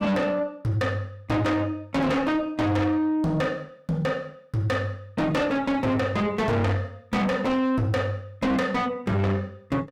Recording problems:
distorted audio; soft clipping, signal-to-distortion ratio 6 dB

